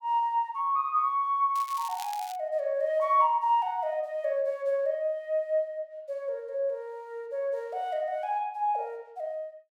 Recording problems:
crackling; at 1.5 s; loose cable, SNR 16 dB

